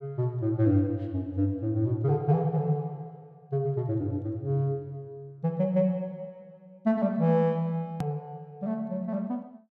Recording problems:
hard cut with a click; at 8 s

